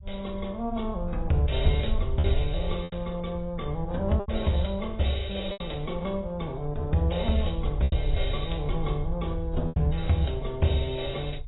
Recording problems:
lossy compression; AAC, log-spectral distance 5 dB, nothing above 3.9 kHz
low-frequency rumble; below 72 Hz, SNR 6 dB
packet loss; 4% of the sound replaced, filled with repeated pitch periods

